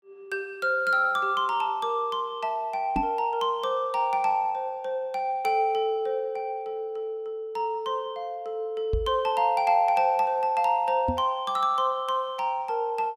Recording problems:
knock on the microphone; at 3 s, at 9 s and at 11 s; peak +1 dB vs average level

